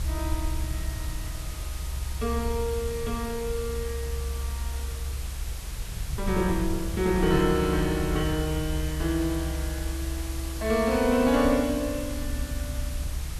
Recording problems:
hiss; slope -1 dB per octave, SNR 12 dB
rumble; below 70 Hz, SNR 6 dB

